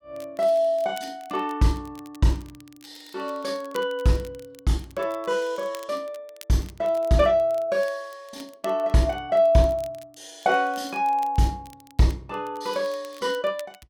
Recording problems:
crackling; vinyl, SNR 26 dB

